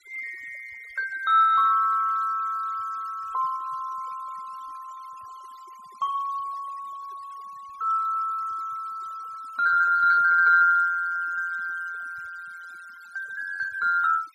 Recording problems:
noise reduction artefacts; signal-to-artefact ratio 26 dB

